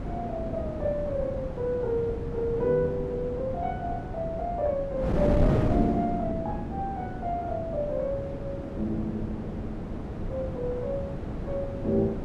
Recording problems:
wind noise; below 360 Hz, SNR 3 dB

